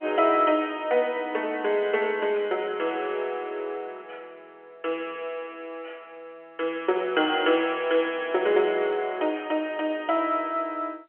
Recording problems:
phone line; 340 Hz to 3.2 kHz, G.711

